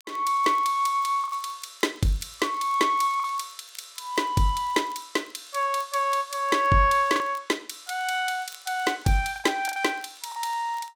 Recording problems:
crackling; vinyl, SNR 28 dB
lost packets; 3% of the sound replaced, filled with the last packet

